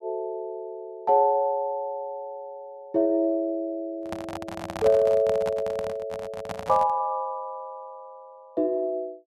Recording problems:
microphone handling noise; from 4 to 7 s; peak -3 dB vs average level

